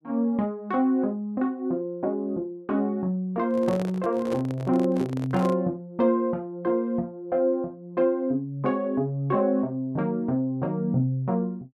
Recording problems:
handling noise; from 3.5 to 5.5 s; peak -4 dB vs average level

